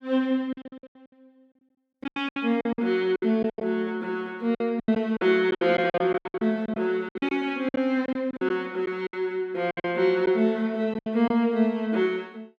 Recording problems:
packet loss; 15% of the sound replaced, filled with silence

